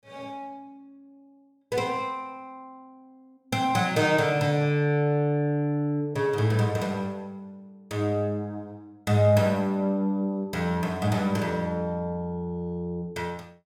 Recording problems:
none

